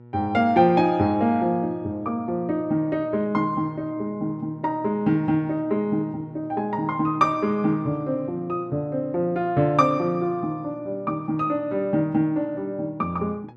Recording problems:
electrical hum; 60 Hz, harmonics up to 960 Hz, SNR 22 dB

